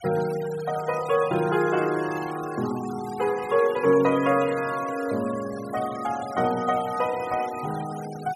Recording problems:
noise reduction artefacts; signal-to-artefact ratio 16 dB

